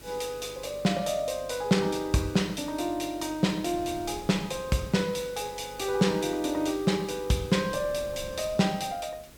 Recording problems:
mains hum; 50 Hz, harmonics up to 600 Hz, SNR 23 dB
background hiss; slope -2 dB per octave, SNR 22 dB
wind noise; below 360 Hz, SNR 20 dB

